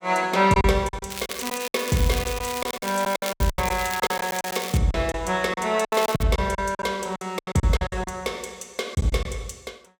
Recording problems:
packet loss; 14% of the sound replaced, filled with silence
crackle; from 1 to 5 s and at 6 s; loose cable, SNR 9 dB

